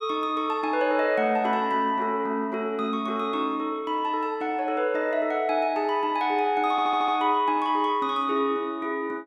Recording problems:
stutter; at 6.5 s

